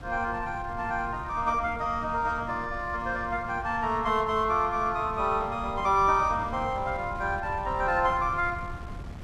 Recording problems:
wind noise; below 160 Hz, SNR 14 dB

